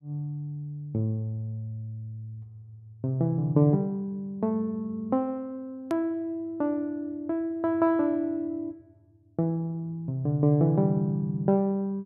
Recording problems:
click at an edit; at 6 s

